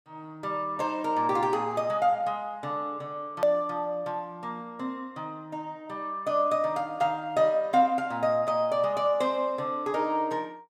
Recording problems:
hard cut with a click; at 3.5 s

